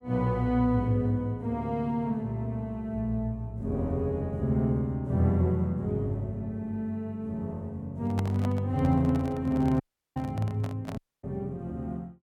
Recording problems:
microphone handling noise; from 8 to 11 s; peak -2 dB vs average level
audio cutting out; at 10 s and at 11 s

